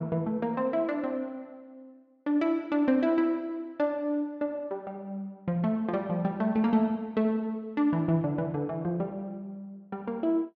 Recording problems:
none

